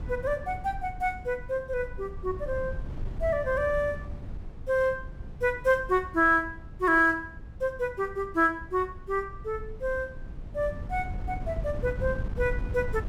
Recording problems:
wind on the microphone; below 110 Hz, SNR 11 dB

